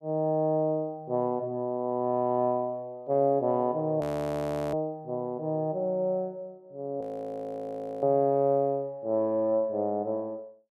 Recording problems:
audio freezing; at 4 s for 0.5 s and at 7 s for 1 s

